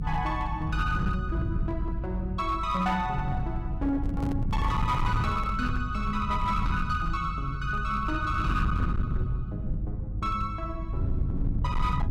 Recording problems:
distortion; hard clipping, signal-to-distortion ratio 12 dB
low-frequency rumble; below 130 Hz, SNR 1 dB
handling noise; from 4 to 5.5 s; peak -6 dB vs average level

